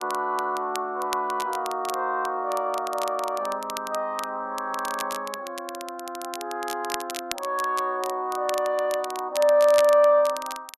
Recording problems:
crackle; vinyl, SNR 13 dB

